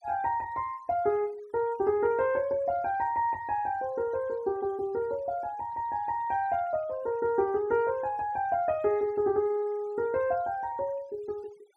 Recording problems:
denoising artefacts; signal-to-artefact ratio 27 dB

